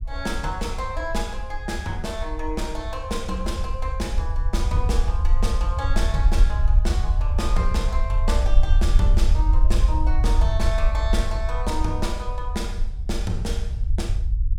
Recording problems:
low-frequency rumble; below 58 Hz, SNR -5 dB

